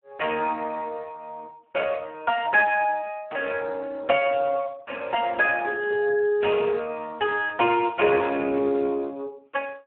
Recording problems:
telephone audio; 170 Hz to 2.8 kHz, Speex

